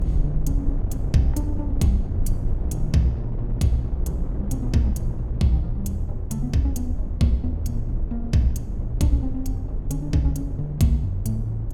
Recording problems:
rumble; below 48 Hz, SNR 7 dB
wind noise; below 260 Hz, SNR 11 dB

